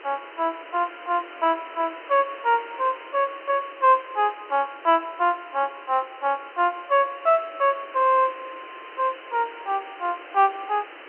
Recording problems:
telephone audio; 280 Hz to 3.1 kHz, G.711
hiss; SNR 18 dB

